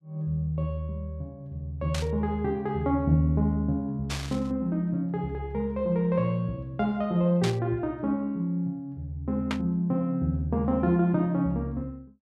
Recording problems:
burst of static; 4 times, first at 2 s; peak -1 dB vs average level

